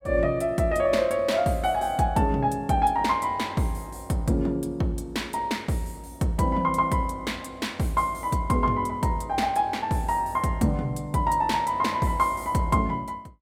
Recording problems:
none

